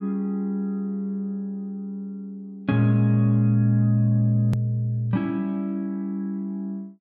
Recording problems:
click at an edit; at 4.5 s

